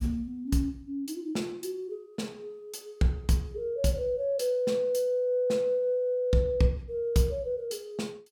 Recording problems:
none

